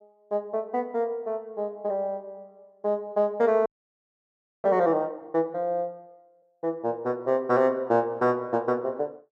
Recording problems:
audio freezing; at 3.5 s for 1 s

